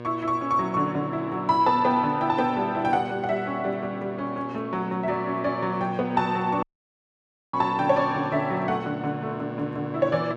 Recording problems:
electrical hum; 60 Hz, harmonics up to 2.8 kHz, SNR 13 dB
dropout; at 6.5 s for 1 s

